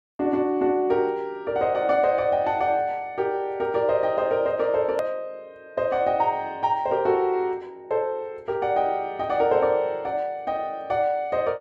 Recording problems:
edit click; at 5 s

